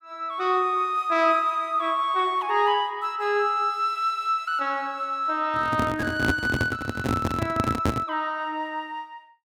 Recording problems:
handling noise; from 5.5 to 8 s; peak +4 dB vs average level

